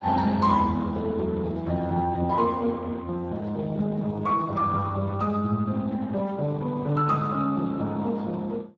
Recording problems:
codec artefacts; Speex, log-spectral distance 3 dB

